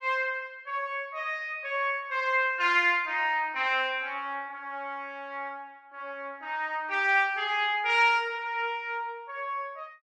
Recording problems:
none

